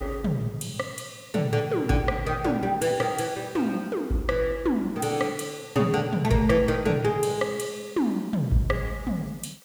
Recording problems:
hiss; slope +1 dB per octave, SNR 27 dB

